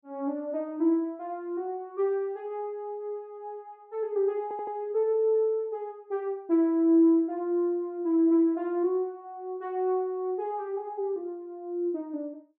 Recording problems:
stutter; at 4.5 s

